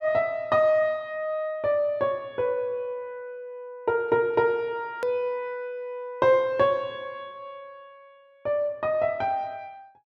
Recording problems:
hard cut with a click; at 5 s

